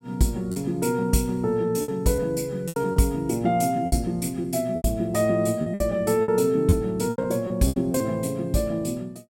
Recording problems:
lost packets; 9% of the sound replaced, filled with repeated pitch periods

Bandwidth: 16.5 kHz